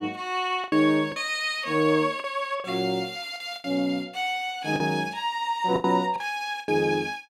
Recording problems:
lost packets; 8% of the sound replaced, filled with the last packet

